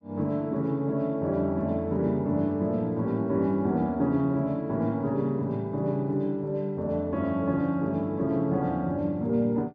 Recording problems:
none

